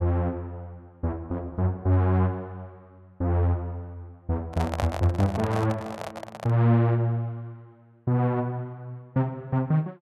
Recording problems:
handling noise; from 4.5 to 6.5 s; peak +1 dB vs average level

